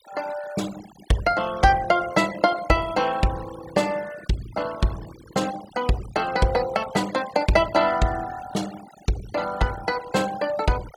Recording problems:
noise reduction artefacts; signal-to-artefact ratio 17 dB

